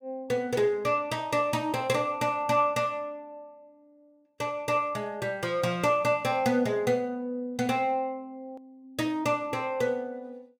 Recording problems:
hard cut with a click; at 8.5 s

